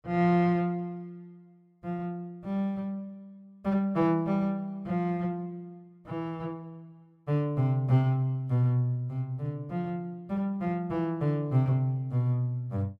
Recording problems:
none

